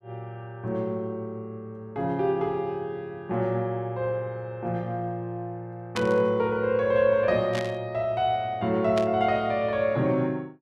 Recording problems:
burst of static; at 6 s, at 7.5 s and at 9 s; peak -2 dB vs average level

